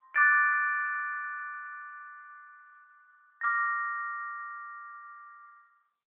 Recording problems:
phone line; 800 Hz to 3.4 kHz, AMR-NB

